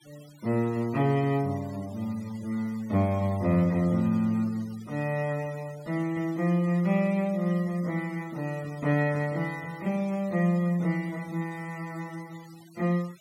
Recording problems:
denoising artefacts; signal-to-artefact ratio 23 dB

